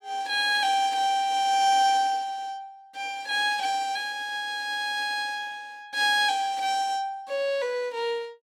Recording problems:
none

